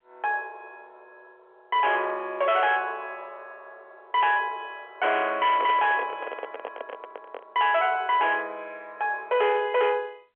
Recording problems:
telephone audio; 340 Hz to 3.4 kHz, G.711
distorted audio; hard clipping, signal-to-distortion ratio 11 dB
handling noise; from 5.5 to 7.5 s; peak -5 dB vs average level

